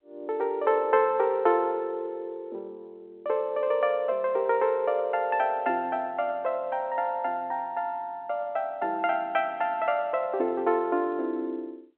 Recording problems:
phone line; 220 Hz to 3.3 kHz, G.711

